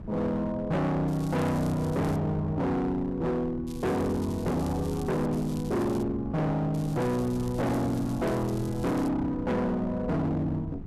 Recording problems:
distortion; hard clipping, signal-to-distortion ratio 7 dB
wind on the microphone; below 200 Hz, SNR 13 dB
crackle; 4 times, first at 1 s; loose cable, SNR 21 dB

